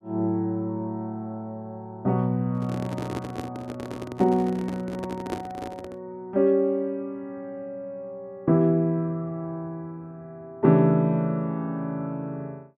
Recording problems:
microphone handling noise; from 2.5 to 6 s; peak -1 dB vs average level

